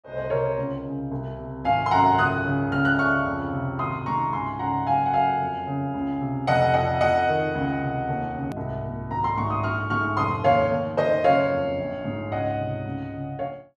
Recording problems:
hard cut with a click; at 8.5 s

